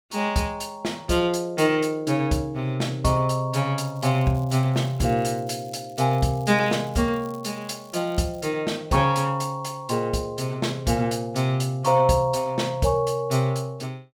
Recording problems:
crackle; from 4 to 8.5 s; loose cable, SNR 28 dB

